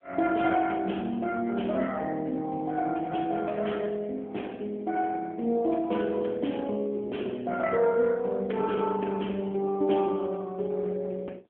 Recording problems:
phone line; 240 Hz to 2.9 kHz, AMR-NB

